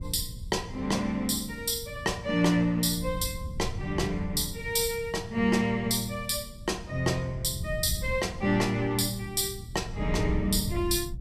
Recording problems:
wind on the microphone; below 120 Hz, SNR 11 dB

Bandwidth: 14.5 kHz